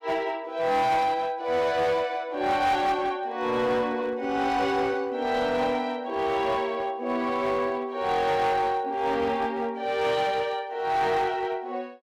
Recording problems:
distorted audio; hard clipping, uneven, signal-to-distortion ratio 11 dB

